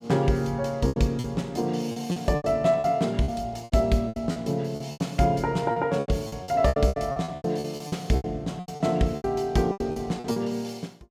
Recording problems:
lost packets; 16% of the sound replaced, filled with repeated pitch periods

